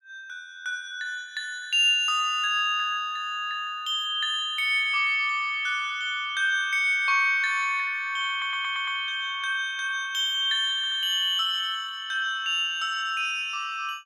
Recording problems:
stutter; at 8.5 s and at 11 s

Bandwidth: 16 kHz